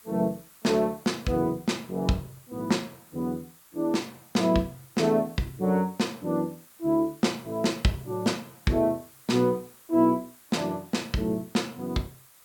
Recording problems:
hiss; SNR 24 dB

